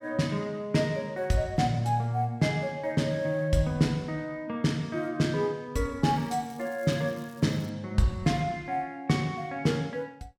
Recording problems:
crackling; from 6 to 7.5 s; loose cable, SNR 27 dB

